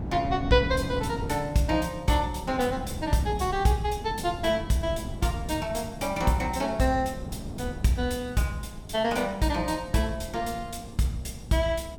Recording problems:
wind on the microphone; below 230 Hz, SNR 11 dB

